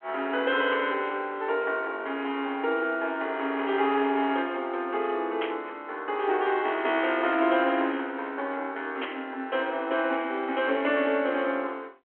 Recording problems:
phone line; 240 Hz to 3.3 kHz, G.726
burst of static; at 5.5 s and at 9 s; peak -2 dB vs average level

